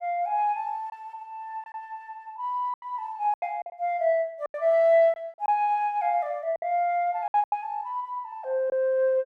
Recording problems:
packet loss; 7% of the sound replaced, filled with silence

